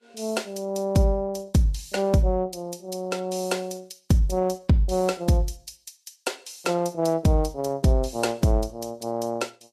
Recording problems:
lossy codec; Vorbis, log-spectral distance 3 dB, nothing above 13.8 kHz

